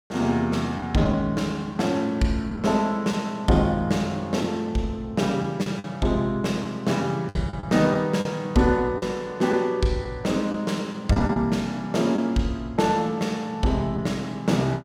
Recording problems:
packet loss; 4% of the sound replaced, filled with the last packet

